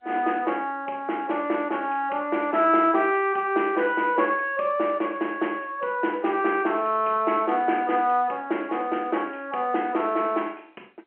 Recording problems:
telephone audio; 260 Hz to 3.1 kHz, G.711

